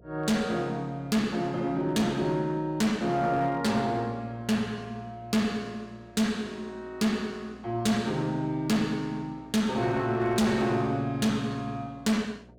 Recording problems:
distorted audio; hard clipping, uneven, signal-to-distortion ratio 10 dB
electrical hum; 60 Hz, harmonics up to 720 Hz, SNR 25 dB

